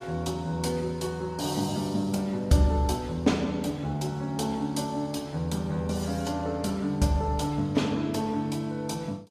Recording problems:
lossy compression; AAC, log-spectral distance 2 dB

